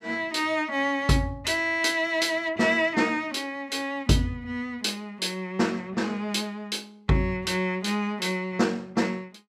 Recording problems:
none

